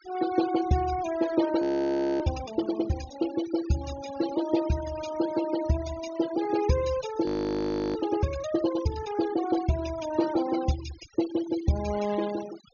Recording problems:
treble cut off; nothing above 6.6 kHz
noise reduction artefacts; signal-to-artefact ratio 12 dB
frozen audio; at 1.5 s for 0.5 s and at 7.5 s for 0.5 s

